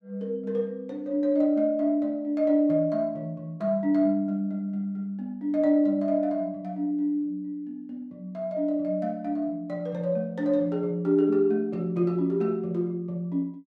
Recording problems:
none

